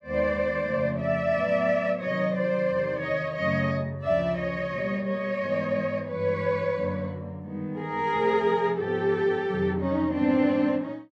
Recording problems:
none

